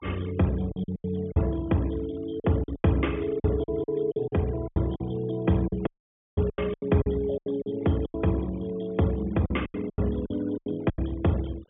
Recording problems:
treble missing; nothing above 3.4 kHz
denoising artefacts; signal-to-artefact ratio 23 dB
packet loss; 14% of the sound replaced, filled with silence
audio cutting out; at 6 s for 0.5 s

